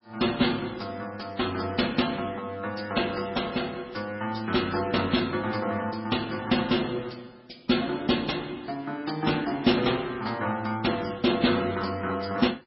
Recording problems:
codec artefacts; MP3, log-spectral distance 6 dB, nothing above 5.5 kHz

